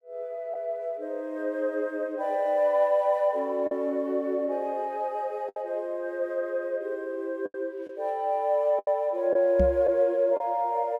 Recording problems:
packet loss; 3% of the sound replaced, filled with the last packet
microphone bump; at 9.5 s; peak +3 dB vs average level

